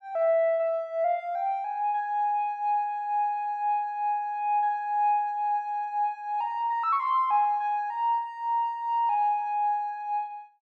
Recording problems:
none

